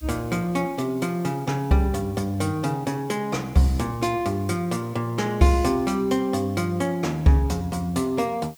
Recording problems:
background hiss; slope +2 dB per octave, SNR 26 dB

